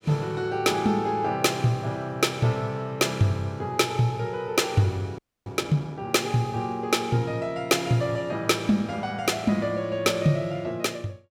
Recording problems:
frozen audio; at 5 s

